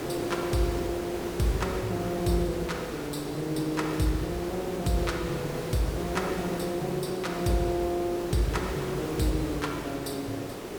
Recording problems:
hiss; SNR 5 dB

